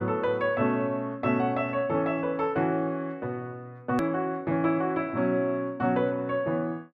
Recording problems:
edit click; at 4 s

